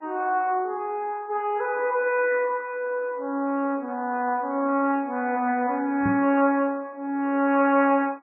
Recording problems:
codec artefacts; MP2, then MP3, log-spectral distance 2 dB, nothing above 2.4 kHz
microphone thump; at 6 s; peak -1 dB vs average level

